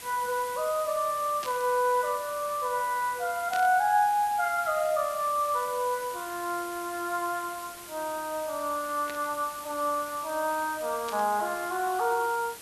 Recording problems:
hiss; slope -1 dB per octave, SNR 13 dB
burst of static; 4 times, first at 1.5 s; peak -6 dB vs average level

